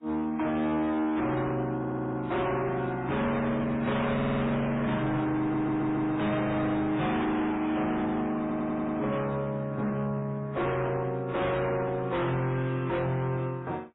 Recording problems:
lossy compression; MP3, then AAC, log-spectral distance 2 dB, nothing above 3.8 kHz
distortion; hard clipping, signal-to-distortion ratio 6 dB
stutter; 4 times, first at 2 s

